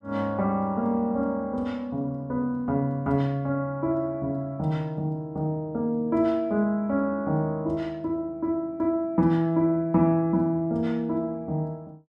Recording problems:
none

